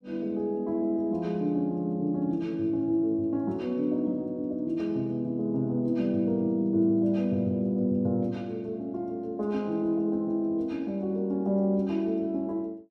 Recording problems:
none

